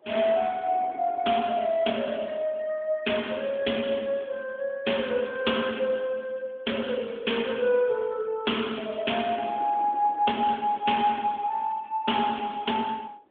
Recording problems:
telephone audio; 240 Hz to 3.6 kHz, AMR-NB
wind on the microphone; below 660 Hz, SNR 21 dB

